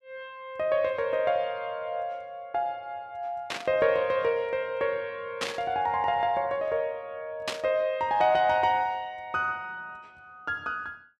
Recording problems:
burst of static; at 3.5 s, at 5.5 s and at 7.5 s; peak +2 dB vs average level

